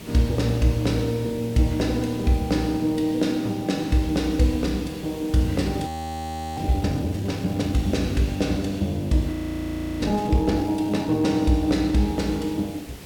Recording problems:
background hiss; SNR 17 dB
frozen audio; at 6 s for 0.5 s and at 9.5 s for 0.5 s

